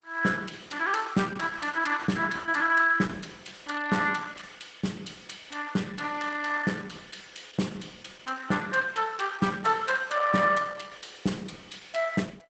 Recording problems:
codec artefacts; Opus, log-spectral distance 5 dB, nothing above 8 kHz

